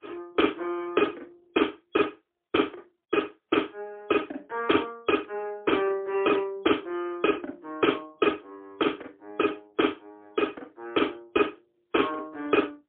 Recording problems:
telephone audio; 260 Hz to 3.4 kHz, AMR-NB, then MP3

